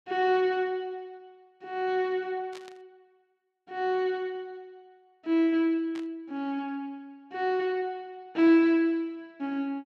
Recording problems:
burst of static; at 2.5 s and at 6 s; peak -14 dB vs average level

